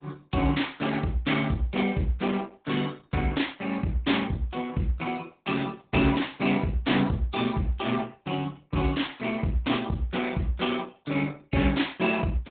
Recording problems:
treble missing; nothing above 3.8 kHz
lossy codec; Opus, log-spectral distance 4 dB

